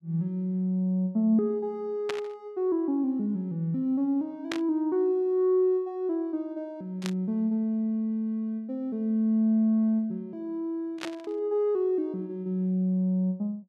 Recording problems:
burst of static; 4 times, first at 2 s; peak -1 dB vs average level

